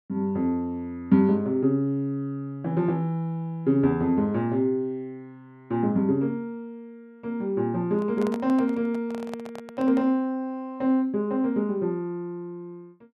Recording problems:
handling noise; from 8 to 10 s; peak -7 dB vs average level

